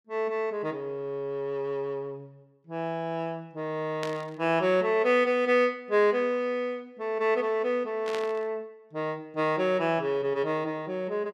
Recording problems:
burst of static; at 4 s and at 8 s; peak -5 dB vs average level

